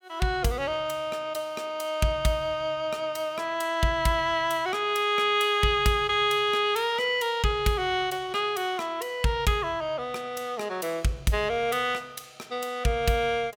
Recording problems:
none

